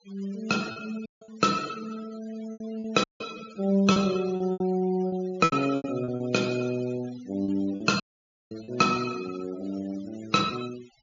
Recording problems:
treble cut off; nothing above 7.1 kHz
denoising artefacts; signal-to-artefact ratio 17 dB
packet loss; 7% of the sound replaced, filled with repeated pitch periods
dropout; at 1 s, at 3 s and at 8 s for 0.5 s

